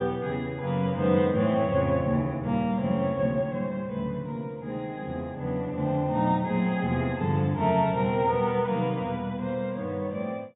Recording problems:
low-pass filter; nothing above 4 kHz

